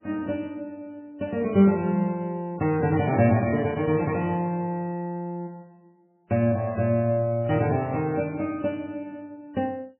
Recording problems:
lossy compression; MP3, log-spectral distance 2 dB, nothing above 2.4 kHz

